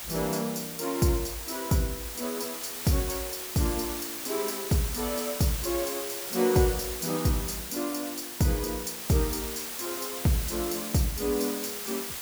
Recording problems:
background hiss; slope 0 dB per octave, SNR 5 dB

